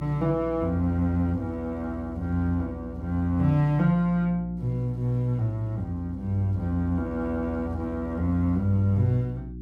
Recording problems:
electrical hum; 60 Hz, harmonics up to 360 Hz, SNR 14 dB

